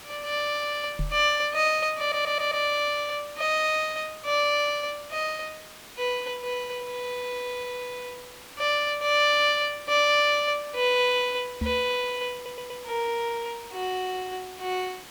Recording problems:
hiss; slope -1 dB per octave, SNR 18 dB
microphone thump; at 1 s and at 12 s; peak -1 dB vs average level
audio stuttering; at 2 s and at 12 s

